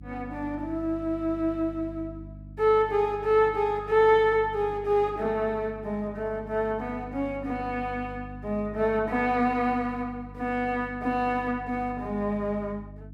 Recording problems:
electrical hum; 50 Hz, harmonics up to 300 Hz, SNR 16 dB

